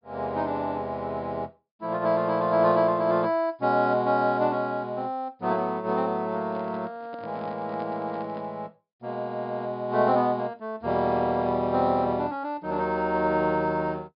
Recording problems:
treble missing; nothing above 5.1 kHz
handling noise; from 6.5 to 8.5 s; peak -12 dB vs average level

